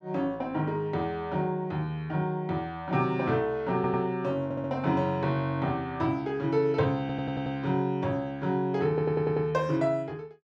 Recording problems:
audio stuttering; 4 times, first at 4 s

